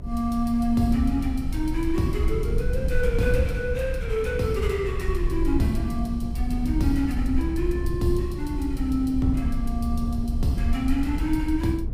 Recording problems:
low-frequency rumble; below 68 Hz, SNR 3 dB

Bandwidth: 15.5 kHz